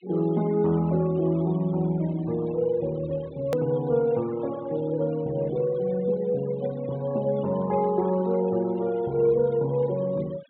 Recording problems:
low-pass filter; nothing above 4 kHz
denoising artefacts; signal-to-artefact ratio 23 dB
edit click; at 3.5 s

